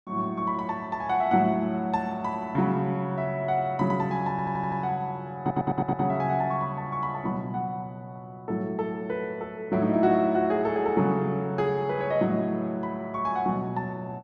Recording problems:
audio stuttering; at 4.5 s and at 5.5 s

